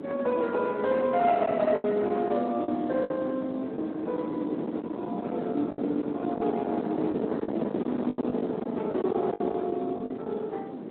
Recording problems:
phone line; 220 Hz to 3.5 kHz, Speex
distortion; hard clipping, signal-to-distortion ratio 9 dB
wind on the microphone; below 570 Hz, SNR 6 dB
packet loss; 7% of the sound replaced, filled with the last packet

